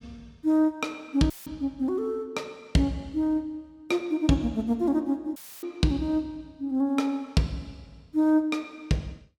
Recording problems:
dropout; at 1.5 s and at 5.5 s; filled with static

